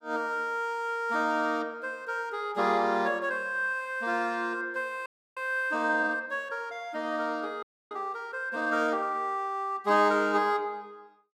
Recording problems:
frozen audio; at 5 s and at 7.5 s

